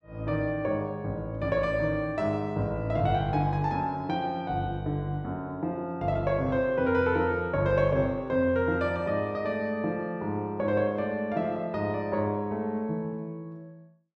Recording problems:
none

